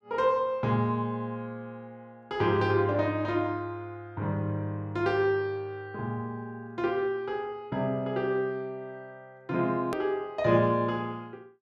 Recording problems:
click at an edit; at 10 s

